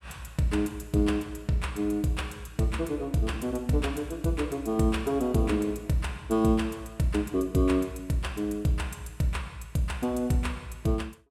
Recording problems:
none

